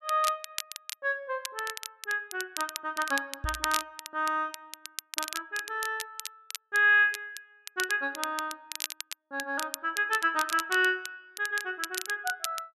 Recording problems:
crackling; vinyl, SNR 9 dB
microphone thump; at 3.5 s; peak -2 dB vs average level

